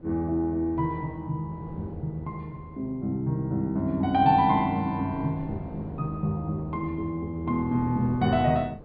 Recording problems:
low-pass filter; nothing above 4.8 kHz
wind noise; below 420 Hz, SNR 19 dB

